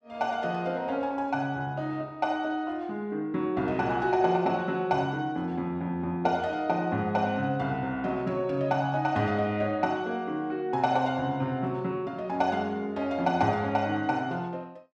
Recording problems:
none

